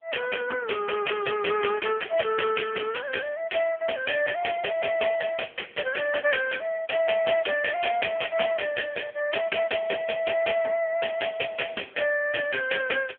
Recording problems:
phone line; 280 Hz to 3.1 kHz, AMR-NB

